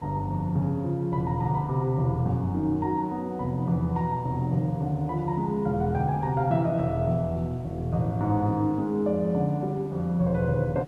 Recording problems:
background hiss; slope -7 dB per octave, SNR 24 dB

